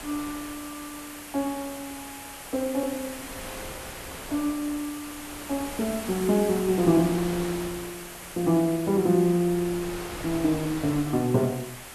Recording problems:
hiss; slope -2 dB per octave, SNR 13 dB
wind on the microphone; below 2 kHz, SNR 15 dB

